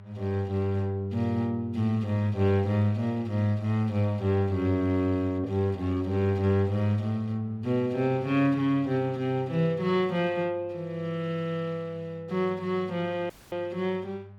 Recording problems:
hum; 50 Hz, harmonics up to 1 kHz, SNR 21 dB
audio cutting out; at 13 s

